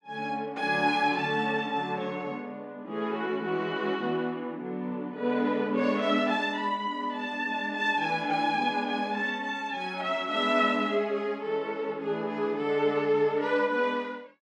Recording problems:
none

